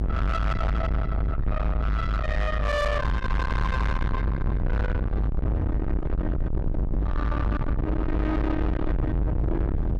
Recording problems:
distortion; soft clipping, signal-to-distortion ratio 6 dB
rumble; below 170 Hz, strongest tone 52 Hz, SNR -2 dB

